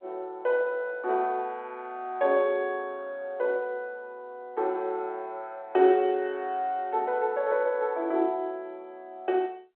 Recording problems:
phone line; 300 Hz to 3.4 kHz, G.711

